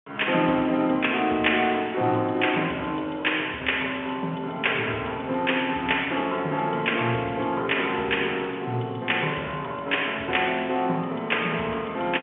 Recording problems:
telephone audio; 190 Hz to 3.5 kHz, G.711

